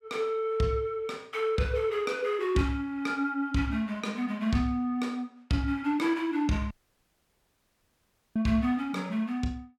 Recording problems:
dropout; at 6.5 s for 1.5 s

